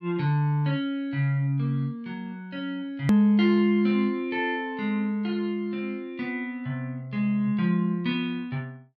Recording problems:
hard cut with a click; at 3 s

